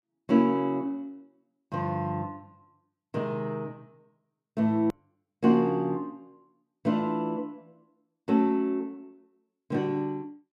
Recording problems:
hard cut with a click; at 5 s

